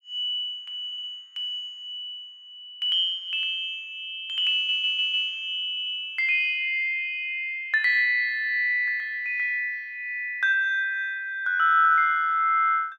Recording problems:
audio stuttering; at 1 s, at 4.5 s and at 5.5 s

